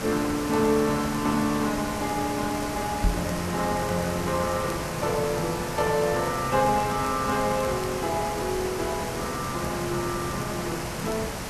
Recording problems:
background hiss; SNR 5 dB
crackling; vinyl, SNR 22 dB
knock on the microphone; at 3 s; peak +5 dB vs average level

